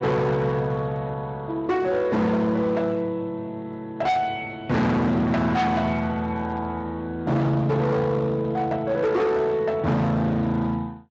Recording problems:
codec artefacts; Speex, log-spectral distance 2 dB, nothing above 7.3 kHz
distorted audio; hard clipping, signal-to-distortion ratio 6 dB

